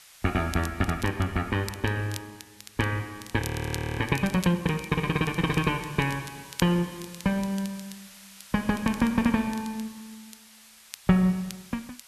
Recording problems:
hiss; SNR 21 dB
crackling; vinyl, SNR 17 dB
audio freezing; at 3.5 s for 0.5 s

